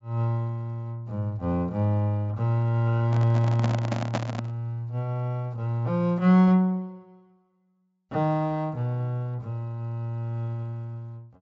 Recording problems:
treble cut off; nothing above 8 kHz
microphone handling noise; from 3 to 4.5 s; peak +2 dB vs average level

